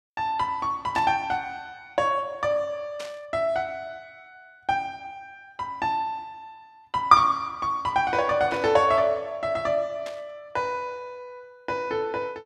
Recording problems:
burst of static; 4 times, first at 1 s; peak -9 dB vs average level

